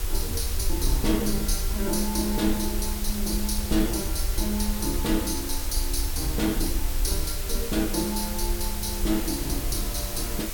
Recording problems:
hum; 60 Hz, harmonics up to 420 Hz, SNR 24 dB
hiss; slope -2 dB per octave, SNR 5 dB
low-frequency rumble; below 56 Hz, SNR 4 dB

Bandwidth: 17.5 kHz